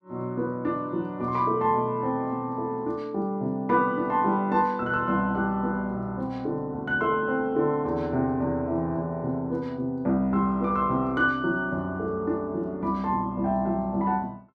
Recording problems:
none

